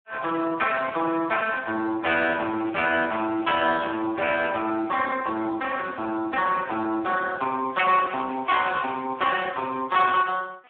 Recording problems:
phone line; 220 Hz to 3.3 kHz, Speex

